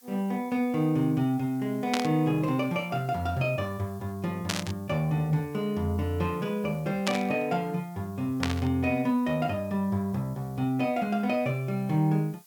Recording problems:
background hiss; SNR 26 dB
static burst; 4 times, first at 2 s; peak +3 dB vs average level

